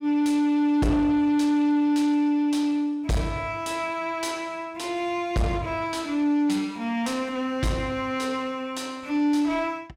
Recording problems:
distorted audio; soft clipping, signal-to-distortion ratio 11 dB

